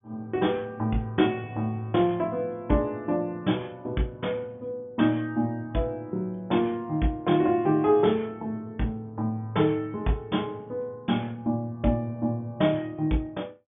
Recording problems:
treble cut off; nothing above 3.5 kHz

